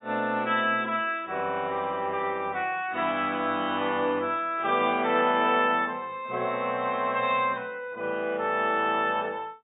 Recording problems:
codec artefacts; AAC, log-spectral distance 2 dB, nothing above 3.2 kHz

